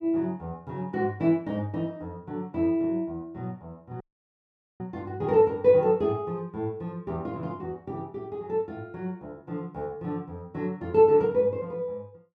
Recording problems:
audio cutting out; at 4 s for 1 s

